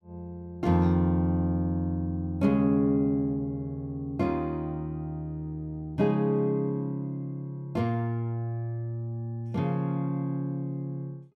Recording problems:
none

